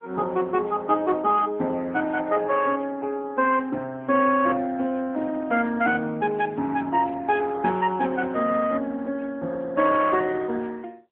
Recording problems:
phone line; 110 Hz to 3.5 kHz, AMR-NB

